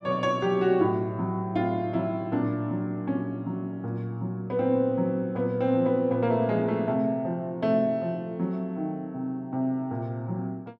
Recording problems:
none

